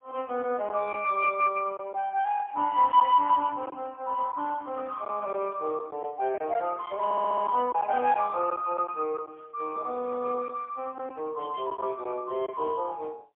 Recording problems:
phone line; 300 Hz to 3.1 kHz, AMR-NB, then MP3
lost packets; 3% of the sound replaced, filled with silence
audio stuttering; at 7 s

